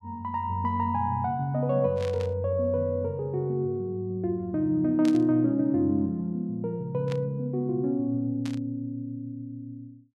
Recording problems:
burst of static; 4 times, first at 2 s; peak -9 dB vs average level

